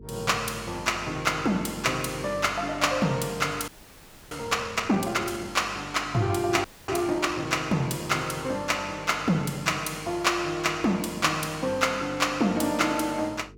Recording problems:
mains hum; 50 Hz, harmonics up to 450 Hz, SNR 21 dB
frozen audio; at 3.5 s for 0.5 s and at 6.5 s

